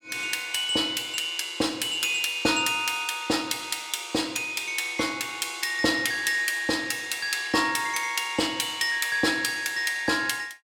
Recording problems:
none

